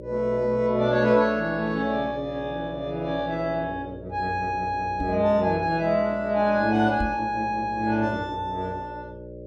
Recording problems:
hum; 60 Hz, harmonics up to 600 Hz, SNR 15 dB
microphone thump; at 5 s and at 7 s; peak -2 dB vs average level

